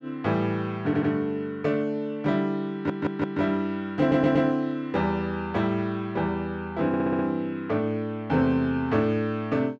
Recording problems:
stutter; 4 times, first at 1 s

